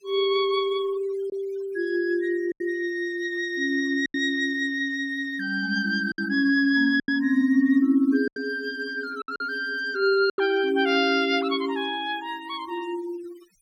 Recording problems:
denoising artefacts; signal-to-artefact ratio 23 dB
packet loss; 4% of the sound replaced, filled with silence

